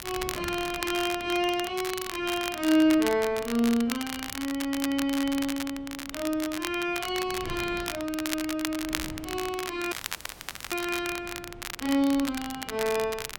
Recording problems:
wind noise; below 380 Hz, SNR 20 dB
crackling; vinyl, SNR 8 dB
dropout; at 10 s for 1 s

